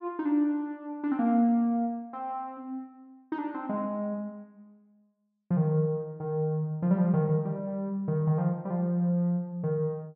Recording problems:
none

